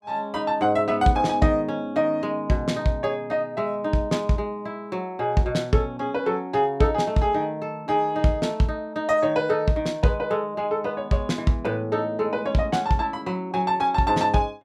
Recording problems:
none

